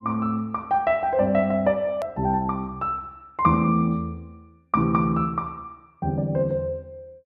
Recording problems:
edit click; at 2 s

